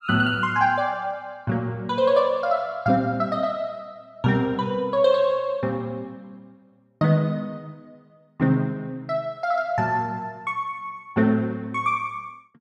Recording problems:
none

